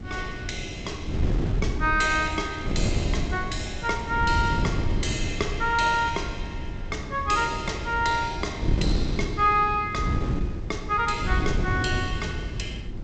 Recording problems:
codec artefacts; G.722, log-spectral distance 2 dB, nothing above 7.6 kHz
wind noise; below 180 Hz, SNR 4 dB

